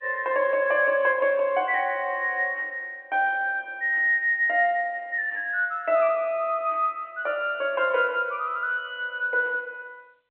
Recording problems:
phone line; 260 Hz to 3.2 kHz, G.711

